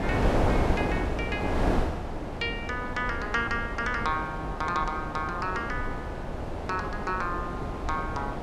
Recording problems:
wind on the microphone; below 650 Hz, SNR 0 dB

